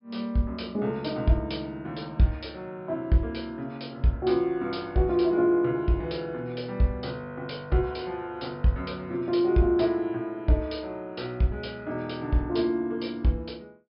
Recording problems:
low-pass filter; nothing above 5.5 kHz

